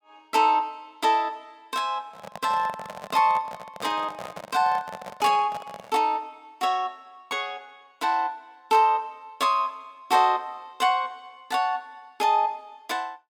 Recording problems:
microphone handling noise; from 2 to 6 s; peak -8 dB vs average level

